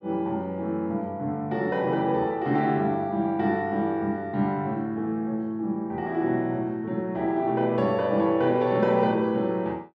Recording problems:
none

